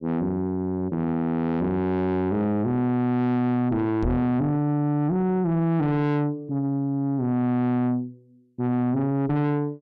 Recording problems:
distortion; soft clipping, signal-to-distortion ratio 6 dB
knock on the microphone; at 4 s; peak +2 dB vs average level

